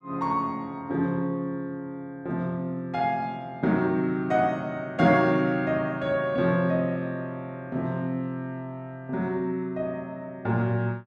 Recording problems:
none

